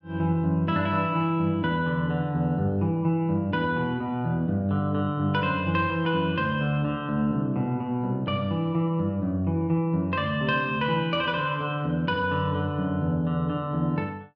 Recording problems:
none

